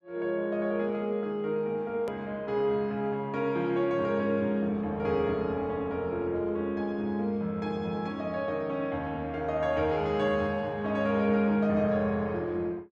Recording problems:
click at an edit; at 2 s

